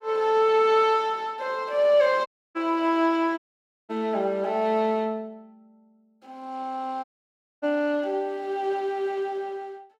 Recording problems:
dropout; at 2.5 s, at 3.5 s for 0.5 s and at 7 s for 0.5 s

